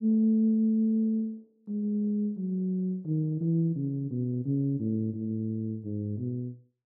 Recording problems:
none

